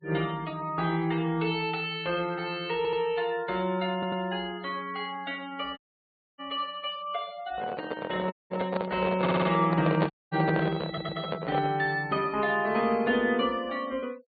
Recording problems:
low-pass filter; nothing above 4.6 kHz
denoising artefacts; signal-to-artefact ratio 22 dB
audio stuttering; 4 times, first at 3 s
audio cutting out; at 6 s for 0.5 s, at 8.5 s and at 10 s
handling noise; from 7.5 to 12 s; peak +5 dB vs average level

